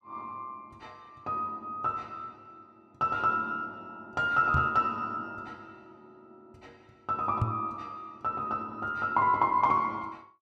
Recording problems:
microphone bump; at 4.5 s and at 7.5 s; peak +5 dB vs average level

